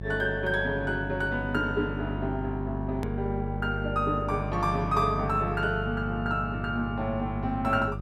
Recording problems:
hum; 50 Hz, harmonics up to 600 Hz, SNR 6 dB
click at an edit; at 3 s

